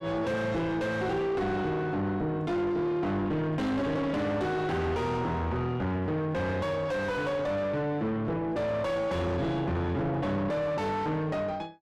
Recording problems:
distortion; soft clipping, signal-to-distortion ratio 5 dB

